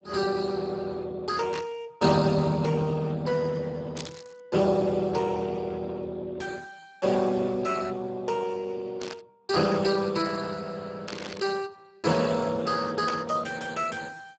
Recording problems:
lossy compression; Speex, log-spectral distance 5 dB, nothing above 7.6 kHz
static burst; 5 times, first at 1.5 s; peak -3 dB vs average level

